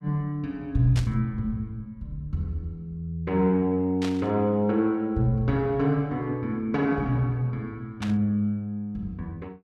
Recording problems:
static burst; at 1 s, at 4 s and at 8 s; peak -5 dB vs average level

